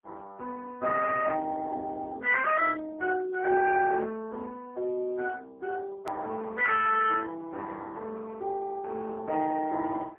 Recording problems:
phone line; 280 Hz to 3.1 kHz, AMR-NB, then MP3
edit click; at 6 s

